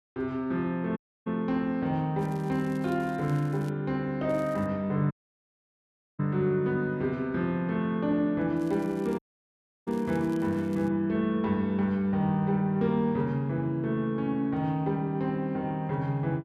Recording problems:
dropout; at 1 s, at 5 s for 1 s and at 9 s for 0.5 s
crackle; from 2 to 3.5 s, at 4.5 s and from 8.5 to 11 s; loose cable, SNR 27 dB

